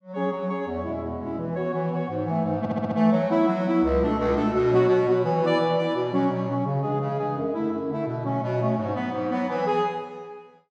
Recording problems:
stutter; at 2.5 s

